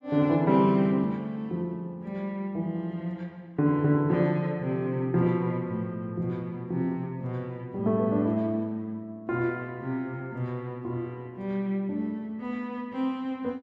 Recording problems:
none

